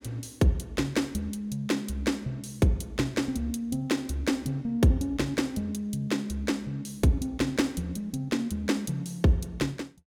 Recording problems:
none

